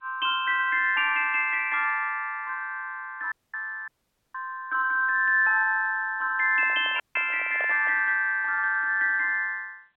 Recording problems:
telephone audio; 260 Hz to 3.7 kHz, G.711
dropout; at 3.5 s, at 4 s and at 7 s
handling noise; from 6.5 to 8 s; peak -9 dB vs average level

